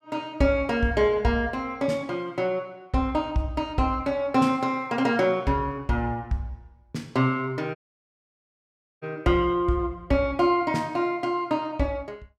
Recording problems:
audio cutting out; at 8 s for 1.5 s

